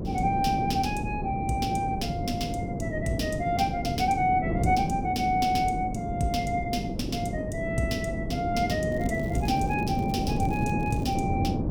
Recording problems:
electrical hum; 50 Hz, harmonics up to 450 Hz, SNR 16 dB
wind on the microphone; below 330 Hz, SNR 2 dB
crackling; from 9 to 11 s; loose cable, SNR 25 dB

